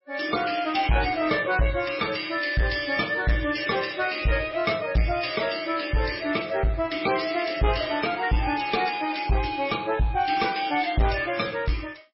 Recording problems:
lossy compression; MP3, log-spectral distance 6 dB, nothing above 5.3 kHz
distorted audio; soft clipping, signal-to-distortion ratio 10 dB

